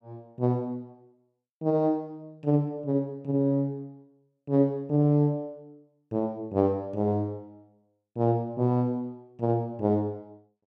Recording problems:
none

